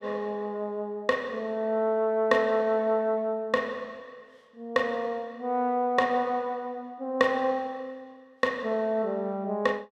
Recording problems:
none

